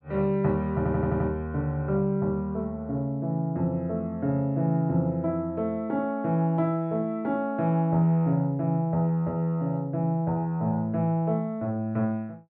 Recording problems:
audio stuttering; at 1 s

